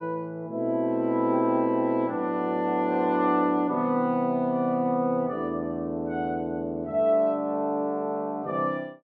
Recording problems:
none

